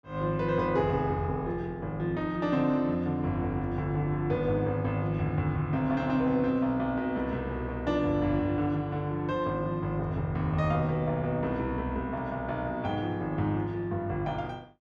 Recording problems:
none

